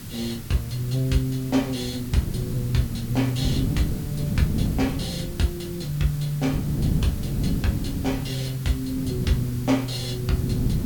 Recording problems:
hiss; SNR 15 dB
wind noise; below 220 Hz, SNR 4 dB

